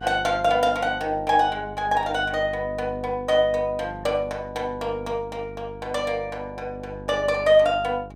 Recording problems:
hum; 50 Hz, harmonics up to 800 Hz, SNR 17 dB

